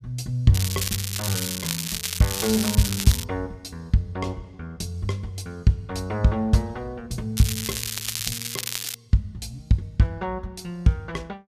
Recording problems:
crackling; from 0.5 to 3 s and from 7.5 to 9 s; loose cable, SNR 3 dB

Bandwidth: 14.5 kHz